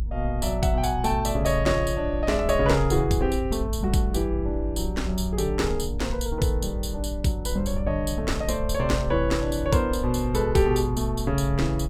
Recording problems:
rumble; below 58 Hz, strongest tone 54 Hz, SNR 6 dB

